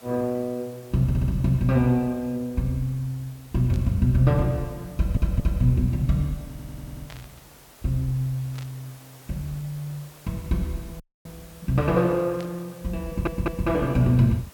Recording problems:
background hiss; slope -3 dB per octave, SNR 24 dB
audio stuttering; 4 times, first at 1 s
static burst; 4 times, first at 3.5 s; peak -13 dB vs average level
audio cutting out; at 11 s

